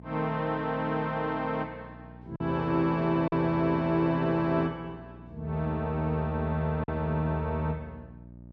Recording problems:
mains hum; 60 Hz, harmonics up to 660 Hz, SNR 19 dB
packet loss; 1.5% of the sound replaced, filled with silence

